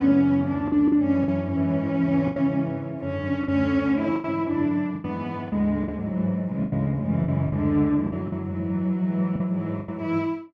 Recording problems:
packet loss; 8% of the sound replaced, filled with the last packet

